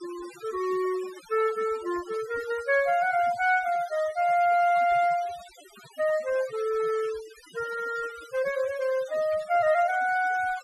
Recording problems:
denoising artefacts; signal-to-artefact ratio 19 dB

